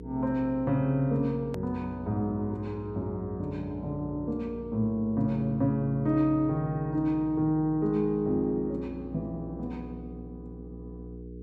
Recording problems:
mains hum; 60 Hz, harmonics up to 480 Hz, SNR 14 dB
hard cut with a click; at 1.5 s

